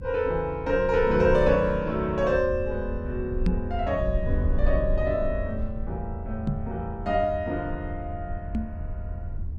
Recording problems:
low-frequency rumble; below 80 Hz, SNR 6 dB
microphone bump; at 3.5 s, at 6.5 s and at 8.5 s; peak +4 dB vs average level

